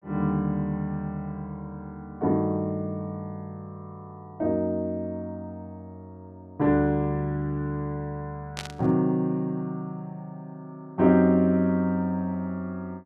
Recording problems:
static burst; at 8.5 s; peak -3 dB vs average level

